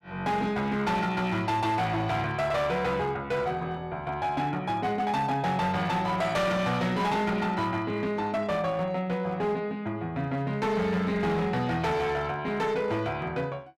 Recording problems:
distorted audio; hard clipping, signal-to-distortion ratio 11 dB

